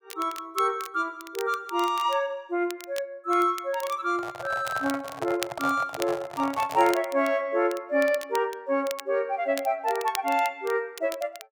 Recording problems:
crackling; vinyl, SNR 15 dB
microphone handling noise; from 4 to 7 s; peak -1 dB vs average level

